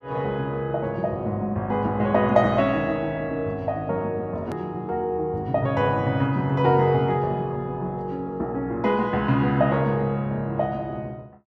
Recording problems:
click at an edit; at 4.5 s

